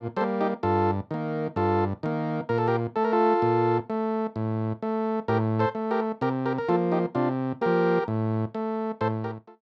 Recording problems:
none

